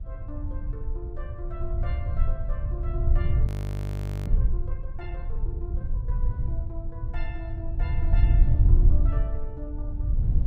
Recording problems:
wind on the microphone; below 74 Hz, SNR -15 dB
audio freezing; at 3.5 s for 1 s

